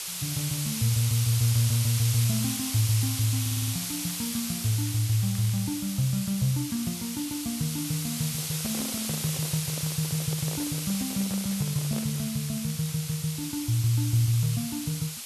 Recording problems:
hiss; slope +3 dB per octave, SNR 4 dB
audio stuttering; at 3.5 s
crackling; from 4 to 5.5 s and from 11 to 13 s; loose cable, SNR 23 dB
handling noise; from 8 to 12 s; peak -8 dB vs average level

